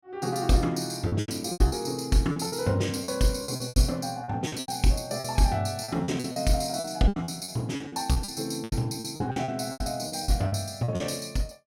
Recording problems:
packet loss; 15% of the sound replaced, filled with repeated pitch periods

